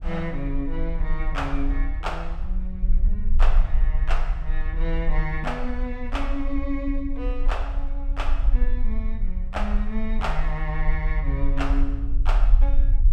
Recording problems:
low-frequency rumble; below 42 Hz, strongest tone 22 Hz, SNR -5 dB

